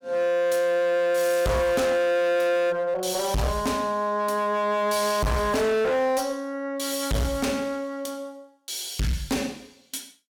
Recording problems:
distorted audio; hard clipping, uneven, signal-to-distortion ratio 7 dB

